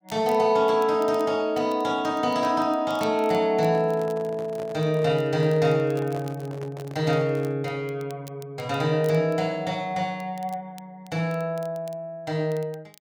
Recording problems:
crackling; vinyl, SNR 27 dB
microphone handling noise; from 3.5 to 7.5 s; peak -10 dB vs average level

